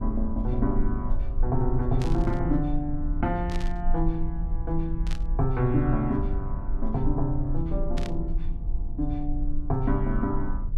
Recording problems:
low-frequency rumble; below 46 Hz, strongest tone 20 Hz, SNR 3 dB
burst of static; 4 times, first at 2 s; peak -6 dB vs average level

